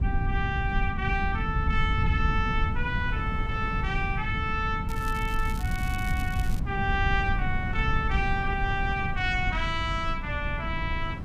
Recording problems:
low-frequency rumble; below 120 Hz, SNR 1 dB
wind on the microphone; below 480 Hz, SNR 15 dB
crackling; from 5 to 6.5 s; loose cable, SNR 16 dB

